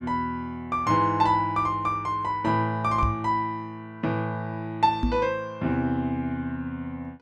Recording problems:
microphone bump; at 3 s and at 5 s; peak +4 dB vs average level

